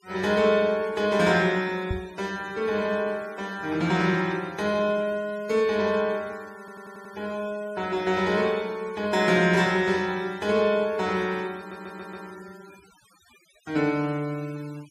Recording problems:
noise reduction artefacts; signal-to-artefact ratio 23 dB
microphone bump; at 2 s; peak -1 dB vs average level
stutter; at 6.5 s and at 12 s

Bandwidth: 14.5 kHz